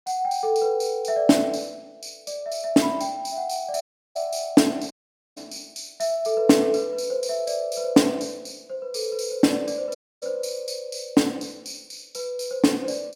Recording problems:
audio cutting out; at 4 s, at 5 s and at 10 s

